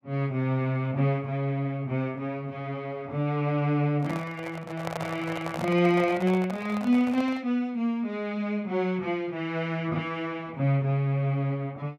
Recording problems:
handling noise; from 4 to 7.5 s; peak -2 dB vs average level

